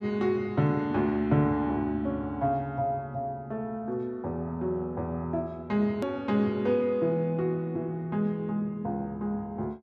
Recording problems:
edit click; at 6 s

